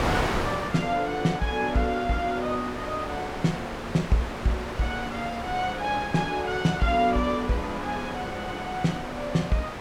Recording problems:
wind noise; below 1.6 kHz, SNR 6 dB

